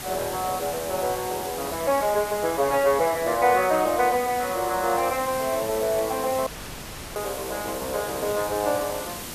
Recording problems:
hiss; slope -3 dB per octave, SNR 9 dB
audio cutting out; at 6.5 s for 0.5 s

